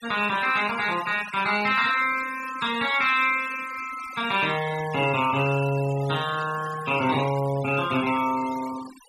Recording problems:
denoising artefacts; signal-to-artefact ratio 14 dB

